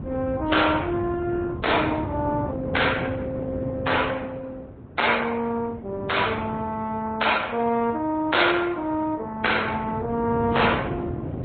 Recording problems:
treble missing; nothing above 4 kHz
codec artefacts; Opus, then MP3, log-spectral distance 4 dB
wind on the microphone; below 310 Hz, SNR 9 dB

